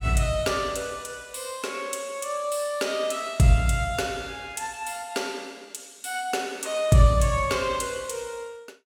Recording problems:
none

